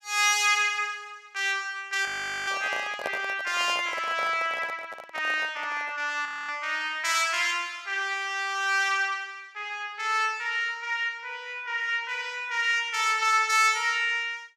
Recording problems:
handling noise; from 2 to 6 s; peak -3 dB vs average level
audio freezing; at 2 s and at 6.5 s

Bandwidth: 14.5 kHz